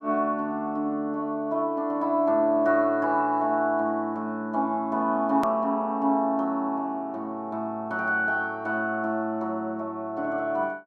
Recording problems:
edit click; at 5.5 s

